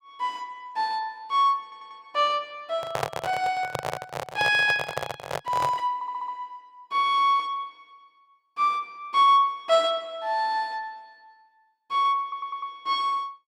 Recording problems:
stutter; at 1.5 s, at 6 s and at 12 s
handling noise; from 3 to 6 s; peak +2 dB vs average level

